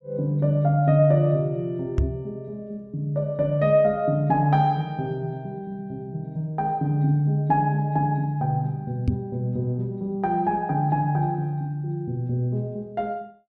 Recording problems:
knock on the microphone; at 2 s and at 9 s; peak +5 dB vs average level

